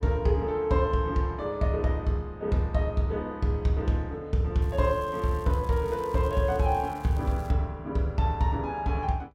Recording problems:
crackle; from 4.5 to 7.5 s; loose cable, SNR 27 dB

